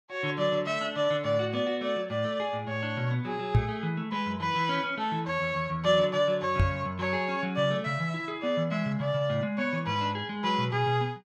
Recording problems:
microphone thump; at 3.5 s and at 6.5 s; peak +9 dB vs average level

